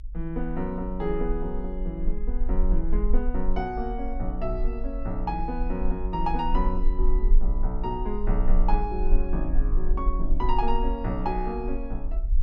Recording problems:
rumble; below 40 Hz, strongest tone 18 Hz, SNR -1 dB

